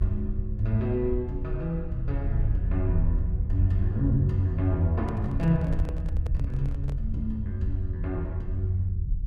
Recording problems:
low-frequency rumble; below 76 Hz, SNR 3 dB
handling noise; from 5 to 7 s; peak -8 dB vs average level

